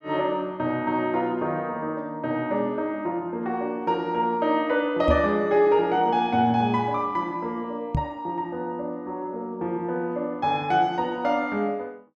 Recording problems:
knock on the microphone; at 5 s and at 8 s; peak +3 dB vs average level

